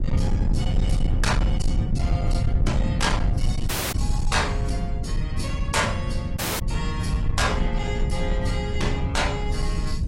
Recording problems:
codec artefacts; AAC, log-spectral distance 2 dB, nothing above 11.3 kHz
distortion; hard clipping, signal-to-distortion ratio 10 dB
rumble; below 110 Hz, SNR -2 dB
audio cutting out; at 3.5 s and at 6.5 s

